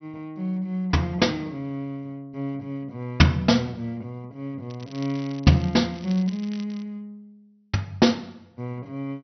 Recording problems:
treble missing; nothing above 6 kHz
crackle; from 4.5 to 7 s; loose cable, SNR 20 dB

